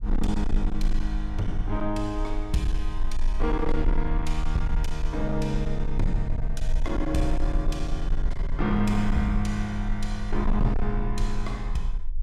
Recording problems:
distorted audio; hard clipping, signal-to-distortion ratio 12 dB
low-frequency rumble; below 38 Hz, strongest tone 20 Hz, SNR 2 dB

